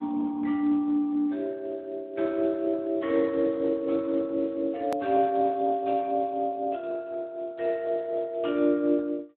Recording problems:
telephone audio; 240 Hz to 2.8 kHz, Speex
edit click; at 5 s

